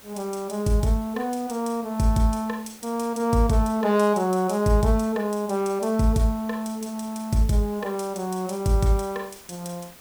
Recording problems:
background hiss; slope -3 dB per octave, SNR 22 dB

